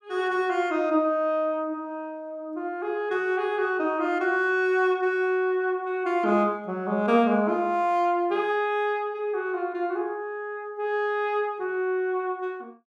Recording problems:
none

